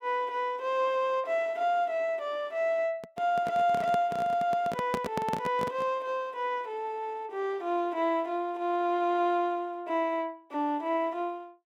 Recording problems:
microphone handling noise; from 3 to 6 s; peak +2 dB vs average level

